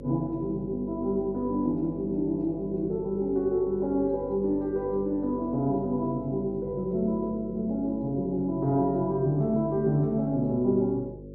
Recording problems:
hum; 50 Hz, harmonics up to 550 Hz, SNR 14 dB

